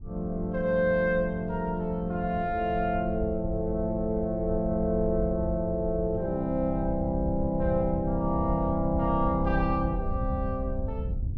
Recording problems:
wind noise; below 90 Hz, SNR 8 dB

